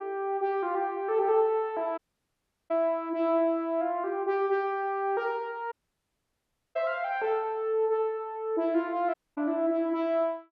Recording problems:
audio cutting out; at 2 s for 0.5 s, at 5.5 s for 1 s and at 9 s

